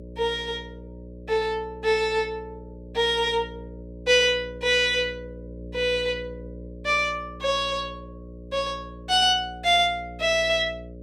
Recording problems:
hum; 60 Hz, harmonics up to 600 Hz, SNR 17 dB

